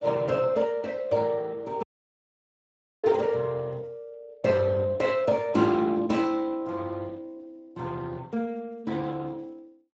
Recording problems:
lossy compression; Speex, log-spectral distance 3 dB
audio cutting out; at 2 s for 1 s

